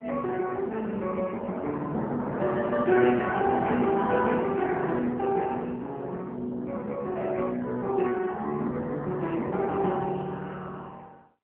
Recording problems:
phone line; 150 Hz to 3.4 kHz, AMR-NB

